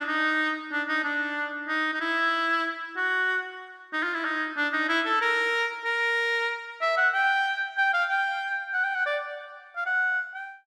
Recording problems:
none

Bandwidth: 12.5 kHz